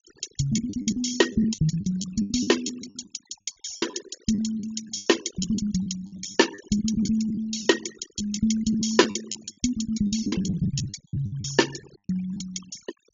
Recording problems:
treble missing; nothing above 7.2 kHz
denoising artefacts; signal-to-artefact ratio 14 dB
packet loss; 14% of the sound replaced, filled with the last packet

